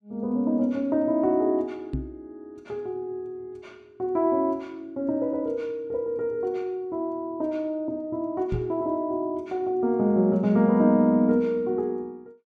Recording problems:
knock on the microphone; at 2 s and at 8.5 s; peak -1 dB vs average level

